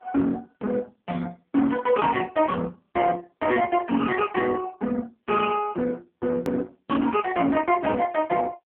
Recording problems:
telephone audio; 190 Hz to 3.3 kHz, AMR-NB
distorted audio; hard clipping, signal-to-distortion ratio 12 dB
edit click; at 6.5 s

